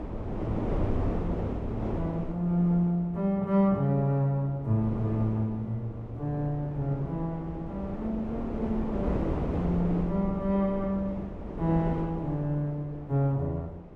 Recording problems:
wind on the microphone; below 430 Hz, SNR 6 dB

